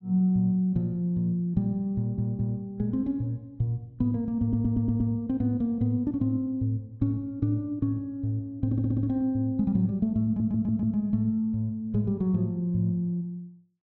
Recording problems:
stutter; 4 times, first at 2 s

